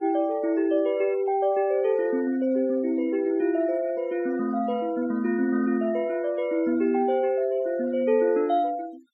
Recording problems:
noise reduction artefacts; signal-to-artefact ratio 23 dB

